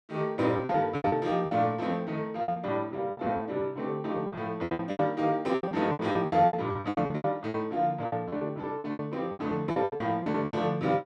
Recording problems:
lost packets; 19% of the sound replaced, filled with repeated pitch periods

